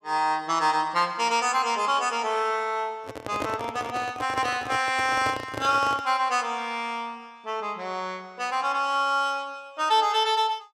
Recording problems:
handling noise; from 3 to 6 s; peak -3 dB vs average level

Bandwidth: 14 kHz